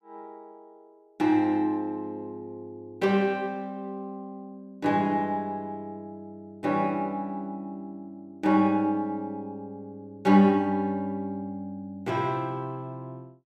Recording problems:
none

